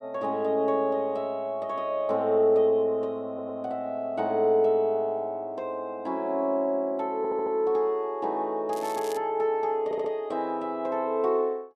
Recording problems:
stutter; at 3.5 s, at 7 s and at 10 s
crackle; at 8.5 s; loose cable, SNR 18 dB

